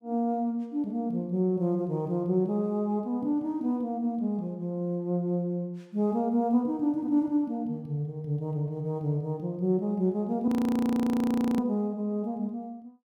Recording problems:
frozen audio; at 10 s for 1 s

